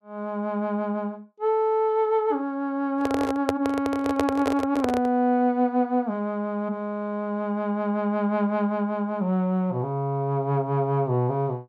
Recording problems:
microphone handling noise; from 3 to 5 s; peak +3 dB vs average level

